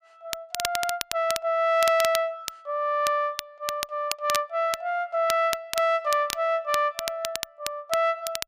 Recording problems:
crackle; vinyl, SNR 8 dB

